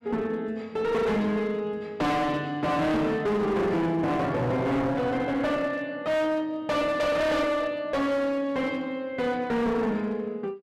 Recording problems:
distortion; hard clipping, uneven, signal-to-distortion ratio 7 dB

